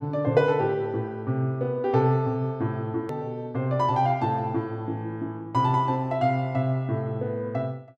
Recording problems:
edit click; at 3 s

